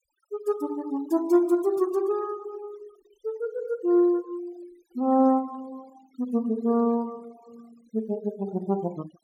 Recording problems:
noise reduction artefacts; signal-to-artefact ratio 25 dB

